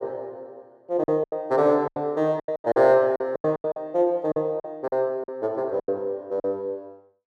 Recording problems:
lost packets; 14% of the sound replaced, filled with silence

